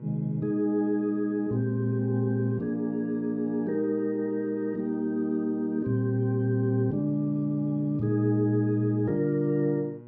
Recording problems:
hum; 60 Hz, harmonics up to 1.1 kHz, SNR 20 dB

